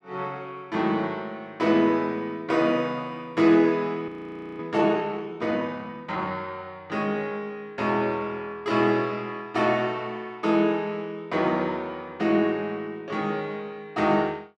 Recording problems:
audio freezing; at 4 s for 0.5 s

